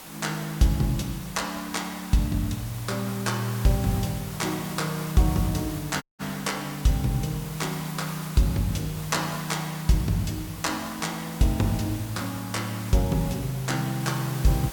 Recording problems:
background hiss; slope -2 dB per octave, SNR 12 dB
audio cutting out; at 6 s

